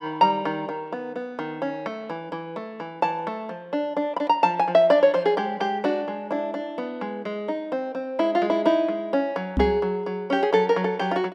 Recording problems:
microphone bump; at 9.5 s; peak +4 dB vs average level

